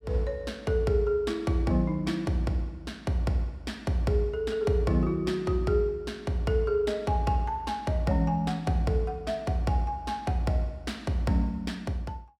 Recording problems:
none

